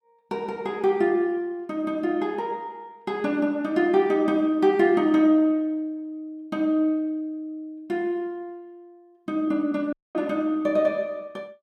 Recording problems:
audio cutting out; at 10 s

